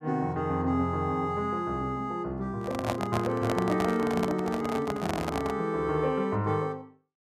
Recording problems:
handling noise; from 2.5 to 5.5 s; peak +3 dB vs average level

